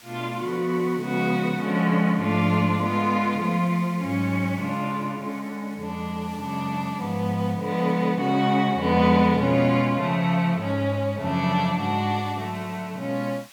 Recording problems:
background hiss; slope +1 dB per octave, SNR 26 dB

